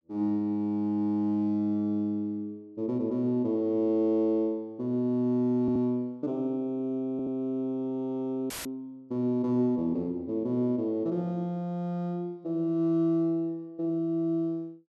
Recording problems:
stutter; at 5.5 s and at 7 s
audio cutting out; at 8.5 s; filled with static

